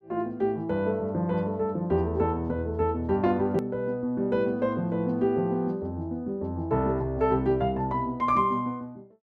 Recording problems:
hard cut with a click; at 3.5 s

